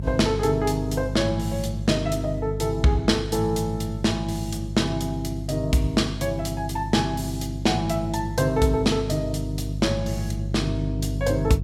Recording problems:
electrical hum; 50 Hz, harmonics up to 350 Hz, SNR 6 dB

